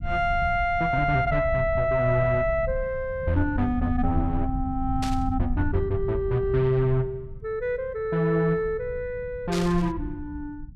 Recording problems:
low-frequency rumble; below 94 Hz, SNR 9 dB
static burst; at 5 s and at 9.5 s; peak -5 dB vs average level

